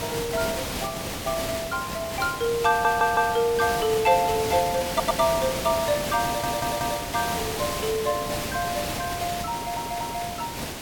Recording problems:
hiss; slope -3 dB per octave, SNR 5 dB
audio stuttering; 4 times, first at 2.5 s

